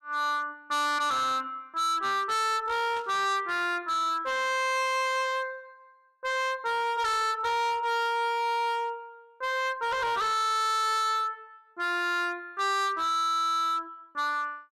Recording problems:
distorted audio; hard clipping, signal-to-distortion ratio 7 dB
burst of static; at 3 s; peak -14 dB vs average level

